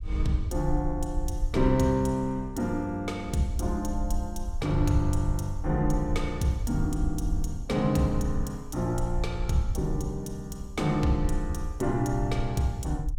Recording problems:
rumble; below 64 Hz, SNR 6 dB

